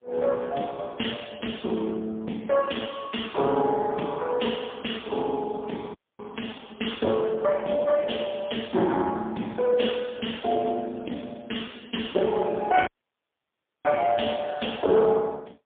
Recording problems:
telephone audio; 190 Hz to 3.4 kHz, AMR-NB, then MP3
dropout; at 6 s and at 13 s for 1 s

